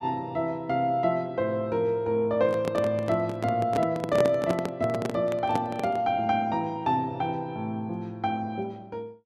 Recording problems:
handling noise; from 2.5 to 6 s; peak +2 dB vs average level

